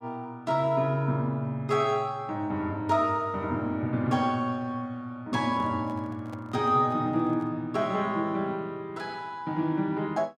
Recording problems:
handling noise; from 5.5 to 7.5 s; peak -12 dB vs average level

